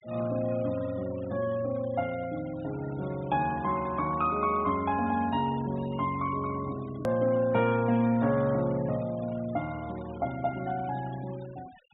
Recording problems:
low-pass filter; nothing above 4 kHz
noise reduction artefacts; signal-to-artefact ratio 20 dB
edit click; at 7 s

